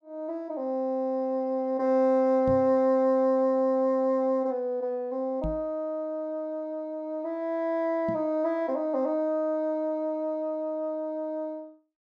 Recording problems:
knock on the microphone; at 2.5 s, at 5.5 s and at 8 s; peak -3 dB vs average level

